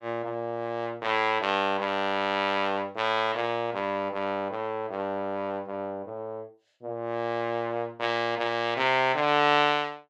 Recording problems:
none

